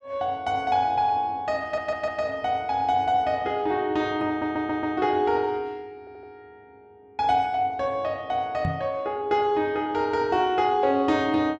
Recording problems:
audio stuttering; at 1.5 s, at 4.5 s and at 6 s
microphone thump; at 8.5 s; peak 0 dB vs average level

